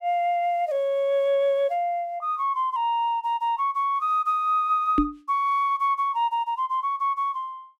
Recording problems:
knock on the microphone; at 5 s; peak +6 dB vs average level

